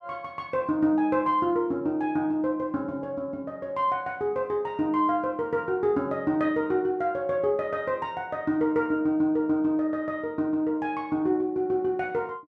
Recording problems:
none

